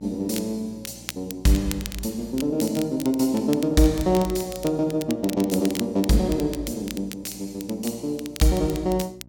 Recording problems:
hum; 60 Hz, harmonics up to 660 Hz, SNR 24 dB
crackling; vinyl, SNR 14 dB

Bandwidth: 18 kHz